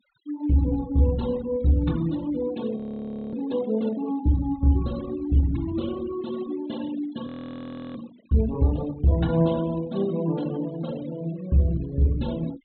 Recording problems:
low-pass filter; nothing above 4.2 kHz
denoising artefacts; signal-to-artefact ratio 20 dB
audio freezing; at 3 s for 0.5 s and at 7.5 s for 0.5 s

